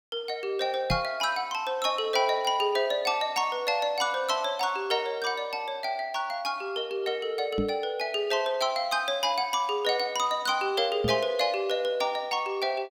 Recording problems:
microphone bump; at 1 s, at 7.5 s and at 11 s; peak +2 dB vs average level

